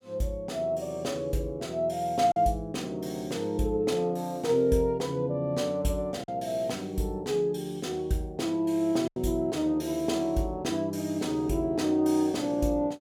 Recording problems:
lost packets; 1.2% of the sound replaced, filled with silence

